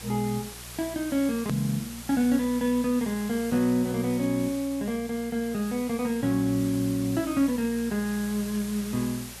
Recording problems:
hum; 60 Hz, harmonics up to 600 Hz, SNR 20 dB
background hiss; slope 0 dB per octave, SNR 14 dB
edit click; at 1.5 s

